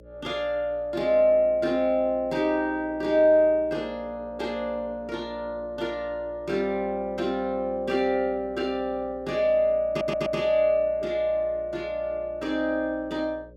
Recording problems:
hum; 60 Hz, harmonics up to 600 Hz, SNR 23 dB
stutter; at 10 s

